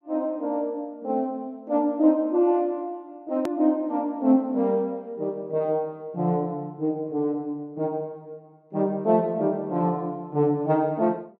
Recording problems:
click at an edit; at 3.5 s

